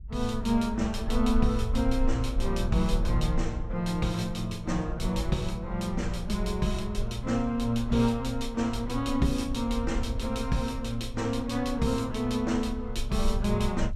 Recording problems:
low-frequency rumble; below 56 Hz, SNR 7 dB

